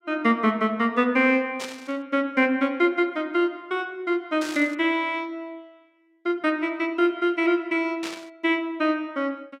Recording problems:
static burst; at 1.5 s, at 4.5 s and at 8 s; peak -6 dB vs average level

